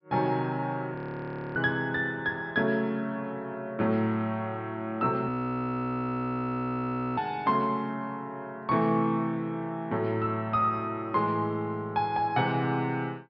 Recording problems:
treble cut off; nothing above 5.4 kHz
frozen audio; at 1 s for 0.5 s and at 5.5 s for 2 s

